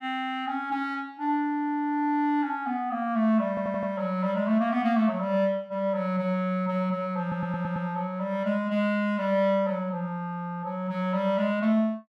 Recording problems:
audio stuttering; at 3.5 s and at 7 s

